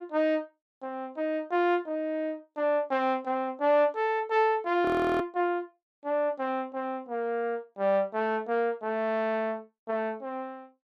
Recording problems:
audio freezing; at 5 s

